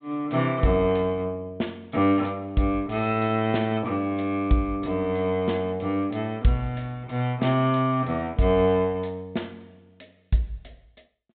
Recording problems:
low-pass filter; nothing above 4 kHz

